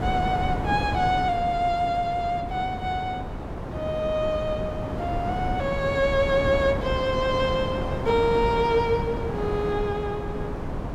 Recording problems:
wind noise; below 530 Hz, SNR 5 dB

